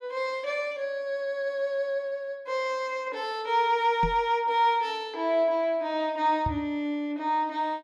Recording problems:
microphone thump; at 4 s and at 6.5 s; peak 0 dB vs average level

